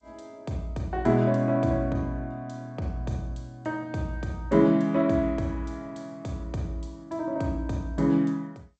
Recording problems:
lossy codec; G.722, log-spectral distance 2 dB, nothing above 7.3 kHz

